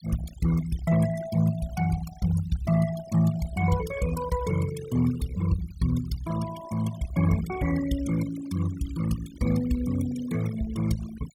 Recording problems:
denoising artefacts; signal-to-artefact ratio 14 dB

